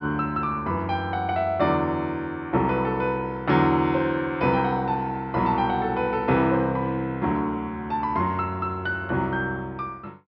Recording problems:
treble cut off; nothing above 5.6 kHz

